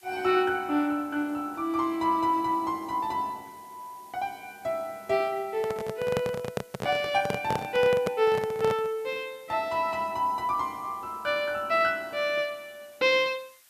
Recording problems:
hiss; slope +2 dB per octave, SNR 27 dB
handling noise; from 5.5 to 9 s; peak +2 dB vs average level

